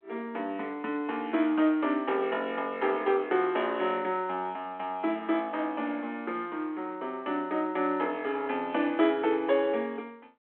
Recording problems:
phone line; 260 Hz to 3.3 kHz, G.726

